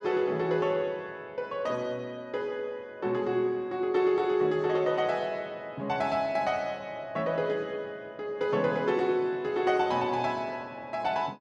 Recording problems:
none

